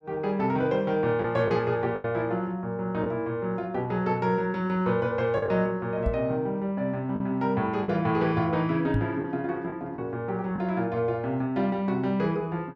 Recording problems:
lost packets; 3% of the sound replaced, filled with the last packet
microphone bump; at 6 s and at 9 s; peak +3 dB vs average level

